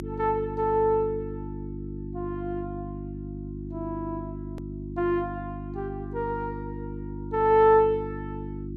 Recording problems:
electrical hum; 50 Hz, harmonics up to 350 Hz, SNR 10 dB
click at an edit; at 4.5 s

